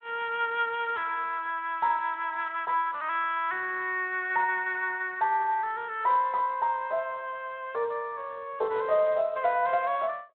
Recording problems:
phone line; 340 Hz to 3.6 kHz, Speex

